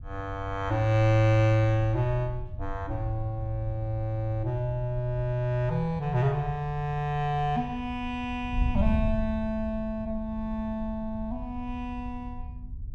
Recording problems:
wind on the microphone; below 86 Hz, SNR 9 dB

